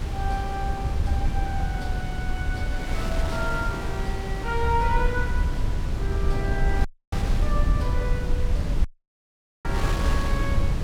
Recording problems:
low-frequency rumble; below 76 Hz, SNR -3 dB
wind on the microphone; below 1.4 kHz, SNR 4 dB
dropout; at 7 s and at 9 s for 1 s

